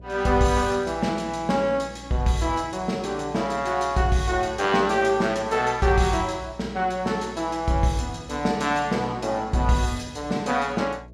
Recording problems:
electrical hum; 60 Hz, harmonics up to 660 Hz, SNR 21 dB

